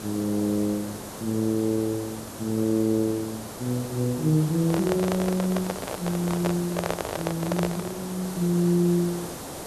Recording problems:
hiss; SNR 10 dB
handling noise; from 4.5 to 8 s; peak +2 dB vs average level

